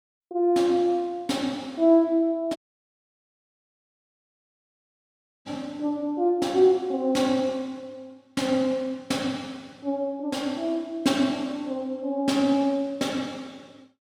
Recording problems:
dropout; at 2.5 s for 3 s

